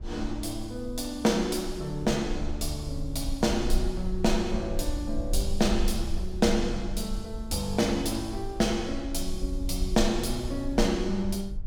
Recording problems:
rumble; below 52 Hz, strongest tone 18 Hz, SNR 7 dB

